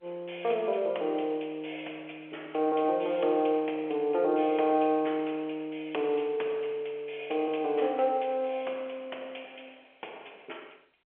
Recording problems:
telephone audio; 320 Hz to 3.4 kHz, G.711

